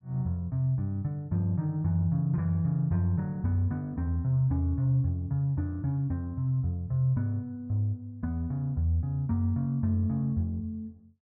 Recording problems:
none

